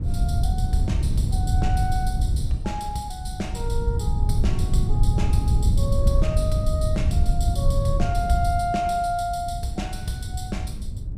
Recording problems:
wind noise; below 98 Hz, SNR -5 dB

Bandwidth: 15 kHz